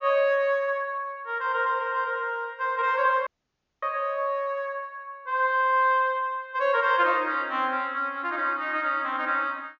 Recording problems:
treble cut off; nothing above 7 kHz
audio cutting out; at 3.5 s for 0.5 s

